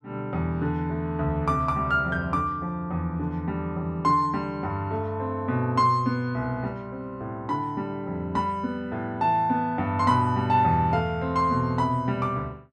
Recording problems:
none

